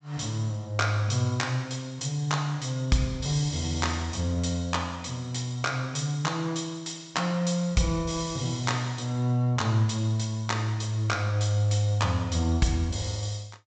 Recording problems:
treble cut off; nothing above 8 kHz

